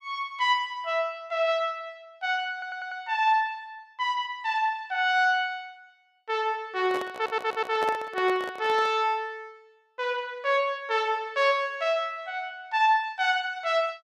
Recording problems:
audio stuttering; at 2.5 s and at 7 s
microphone handling noise; from 7 to 9 s; peak -3 dB vs average level

